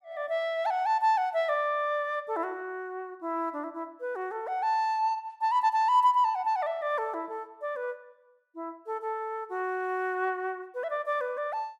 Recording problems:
none

